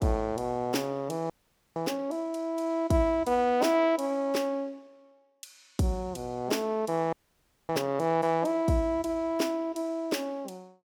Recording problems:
audio freezing; at 1.5 s and at 7 s for 0.5 s

